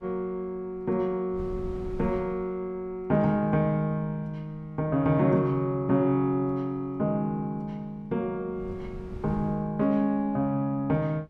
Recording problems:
wind noise; below 140 Hz, SNR 17 dB

